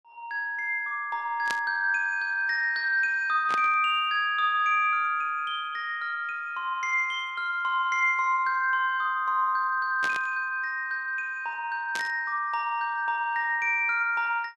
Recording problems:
burst of static; 4 times, first at 1.5 s; peak -3 dB vs average level

